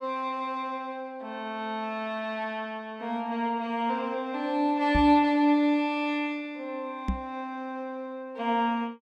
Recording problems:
knock on the microphone; at 5 s and at 7 s; peak +3 dB vs average level

